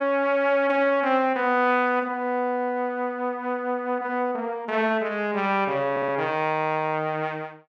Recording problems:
audio stuttering; at 6 s

